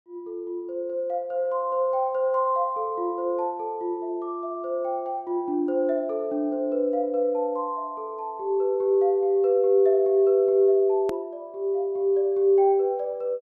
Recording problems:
hard cut with a click; at 11 s

